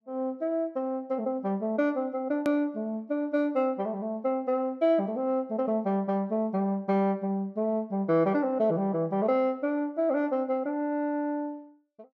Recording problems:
edit click; at 2.5 s

